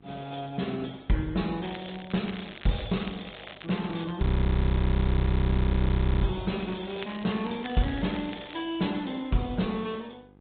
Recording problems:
low-pass filter; nothing above 3.9 kHz
lossy codec; Opus, log-spectral distance 5 dB
hum; 50 Hz, harmonics up to 1.3 kHz, SNR 28 dB
crackling; from 1.5 to 4 s and from 6.5 to 8.5 s; loose cable, SNR 16 dB
frozen audio; at 4 s for 2 s

